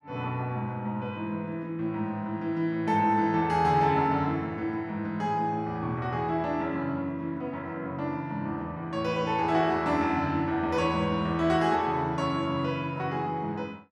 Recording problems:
none

